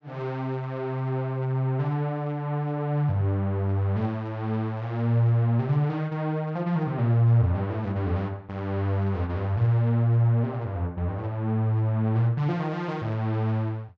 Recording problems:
none

